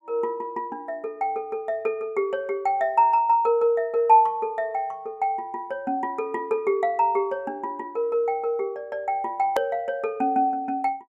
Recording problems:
hard cut with a click; at 9.5 s

